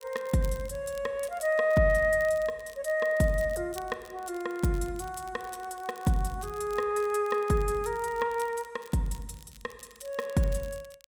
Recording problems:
crackle; vinyl, SNR 23 dB

